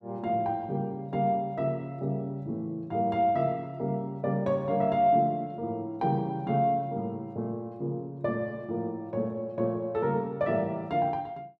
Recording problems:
none

